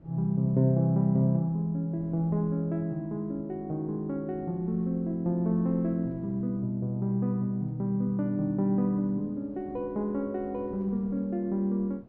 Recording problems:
wind on the microphone; below 350 Hz, SNR 24 dB

